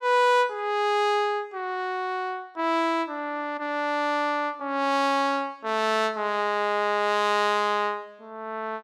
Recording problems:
none

